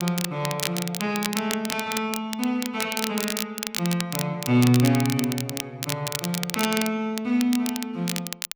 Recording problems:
crackle; vinyl, SNR 5 dB

